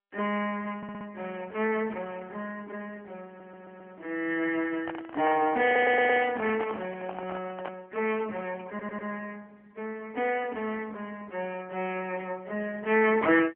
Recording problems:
phone line; 280 Hz to 3.2 kHz, AMR-NB
stutter; 4 times, first at 1 s
microphone handling noise; from 5 to 8 s; peak -1 dB vs average level

